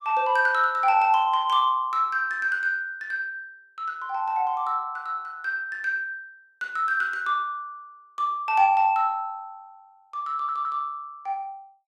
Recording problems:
audio stuttering; at 10 s

